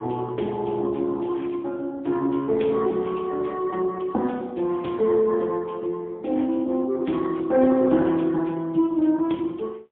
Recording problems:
phone line; 220 Hz to 3.4 kHz, AMR-NB, then MP3

